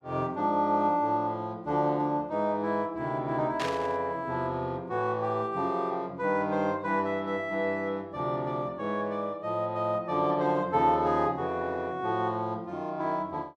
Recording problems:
burst of static; at 3.5 s; peak -1 dB vs average level

